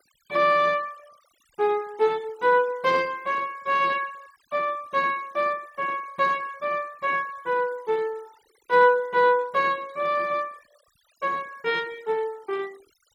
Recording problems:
noise reduction artefacts; signal-to-artefact ratio 26 dB

